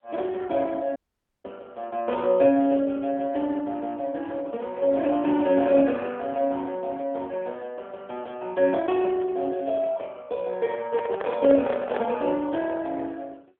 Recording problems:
telephone audio; 240 Hz to 3.9 kHz, AMR-NB
audio cutting out; at 1 s
microphone handling noise; from 11 to 12 s; peak -4 dB vs average level

